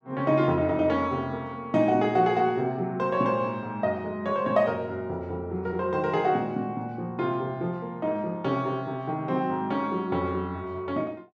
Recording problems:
none

